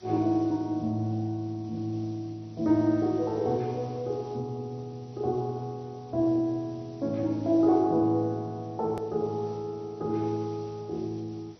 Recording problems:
lossy codec; MP2, log-spectral distance 4 dB, nothing above 13.1 kHz
hiss; SNR 27 dB
click at an edit; at 9 s

